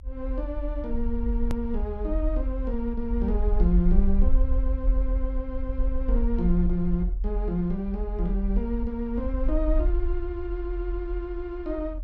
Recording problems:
low-frequency rumble; below 50 Hz, SNR -1 dB
edit click; at 1.5 s

